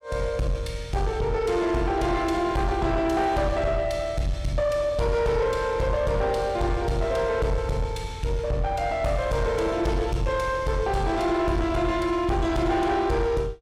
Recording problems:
distortion; soft clipping, signal-to-distortion ratio 10 dB

